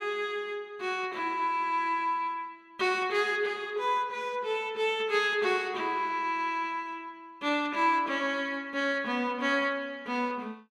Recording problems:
none

